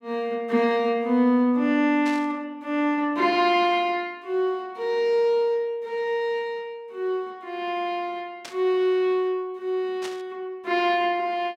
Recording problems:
burst of static; at 2 s, at 8.5 s and at 10 s; peak -8 dB vs average level

